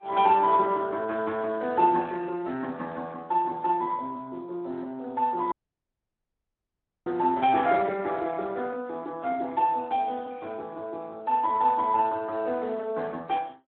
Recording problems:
phone line; 220 Hz to 3.6 kHz, Speex
dropout; at 5.5 s for 1.5 s

